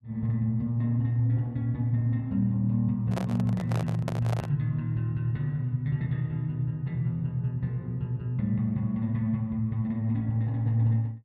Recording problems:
handling noise; from 3 to 4.5 s; peak -2 dB vs average level

